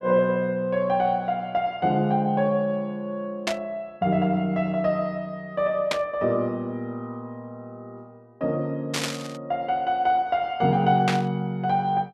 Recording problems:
static burst; 4 times, first at 3.5 s; peak +3 dB vs average level

